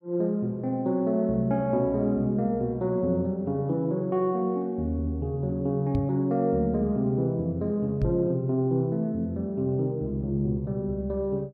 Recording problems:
knock on the microphone; at 6 s and at 8 s; peak +2 dB vs average level

